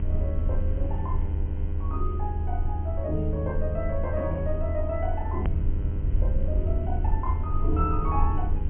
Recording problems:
treble missing; nothing above 3.1 kHz
mains hum; 50 Hz, harmonics up to 2 kHz, SNR 10 dB
background hiss; SNR 25 dB
rumble; below 80 Hz, strongest tone 24 Hz, SNR -4 dB
edit click; at 5.5 s

